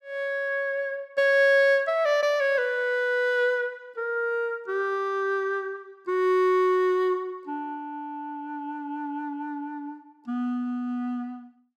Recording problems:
none

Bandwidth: 15 kHz